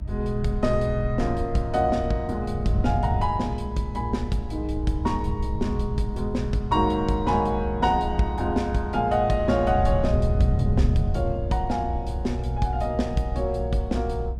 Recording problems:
electrical hum; 50 Hz, harmonics up to 1.9 kHz, SNR 24 dB
rumble; below 64 Hz, strongest tone 60 Hz, SNR 7 dB
wind on the microphone; below 120 Hz, SNR 7 dB

